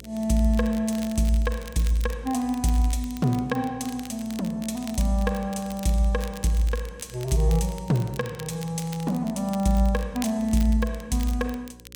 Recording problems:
hum; 60 Hz, harmonics up to 540 Hz, SNR 23 dB
crackle; vinyl, SNR 18 dB

